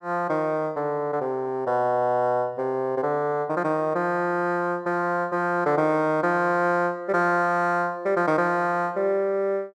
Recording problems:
none

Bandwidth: 13.5 kHz